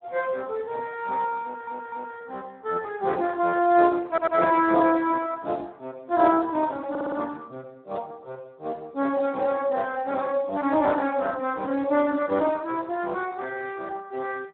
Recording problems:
phone line; 170 Hz to 3.6 kHz, Speex
stutter; at 1.5 s, at 4 s and at 7 s

